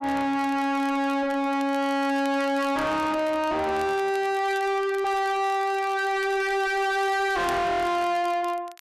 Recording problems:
distorted audio; soft clipping, signal-to-distortion ratio 5 dB
crackling; vinyl, SNR 23 dB

